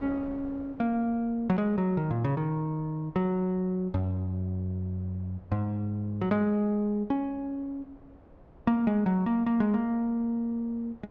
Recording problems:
wind noise; below 520 Hz, SNR 24 dB

